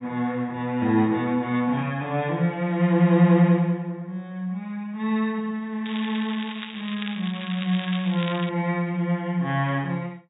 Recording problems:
low-pass filter; nothing above 4 kHz
crackling; from 6 to 8.5 s; loose cable, SNR 12 dB

